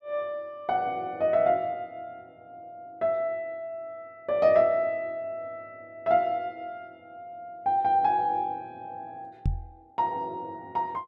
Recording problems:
microphone thump; at 9.5 s; peak +3 dB vs average level

